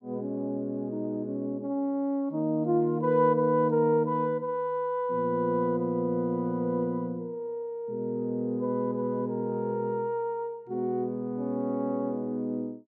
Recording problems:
none

